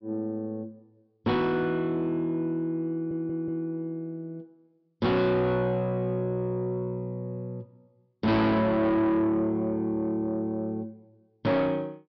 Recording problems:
treble cut off; nothing above 5.5 kHz
distorted audio; soft clipping, signal-to-distortion ratio 7 dB
stutter; at 3 s

